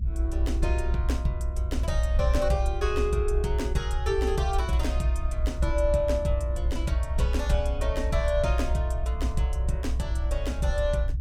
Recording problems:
rumble; below 64 Hz, SNR -1 dB

